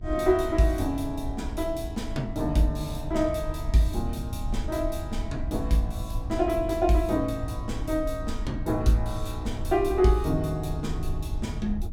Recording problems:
mains hum; 50 Hz, harmonics up to 850 Hz, SNR 22 dB
rumble; below 76 Hz, SNR 8 dB

